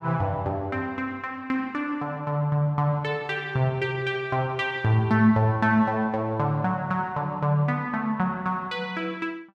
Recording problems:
none

